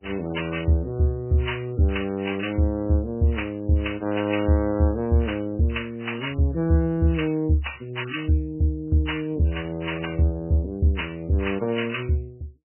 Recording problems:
lossy compression; MP3, log-spectral distance 4 dB, nothing above 3 kHz

